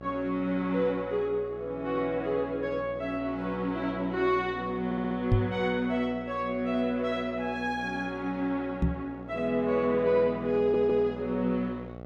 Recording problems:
electrical hum; 60 Hz, harmonics up to 1.4 kHz, SNR 15 dB
audio stuttering; at 5 s and at 11 s
knock on the microphone; at 5.5 s and at 9 s; peak +8 dB vs average level

